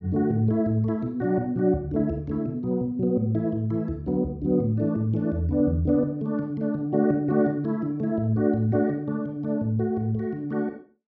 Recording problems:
treble missing; nothing above 8 kHz

